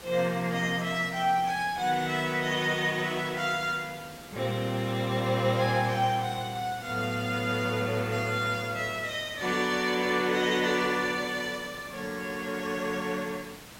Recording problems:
background hiss; slope -3 dB per octave, SNR 17 dB

